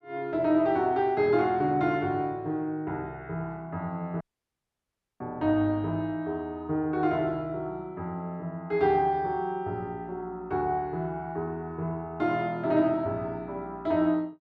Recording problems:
dropout; at 4 s for 1 s

